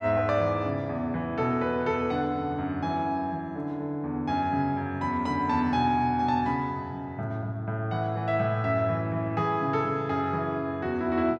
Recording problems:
none

